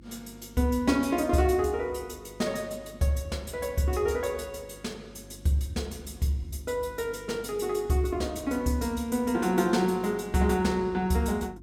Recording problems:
electrical hum; 50 Hz, harmonics up to 350 Hz, SNR 22 dB

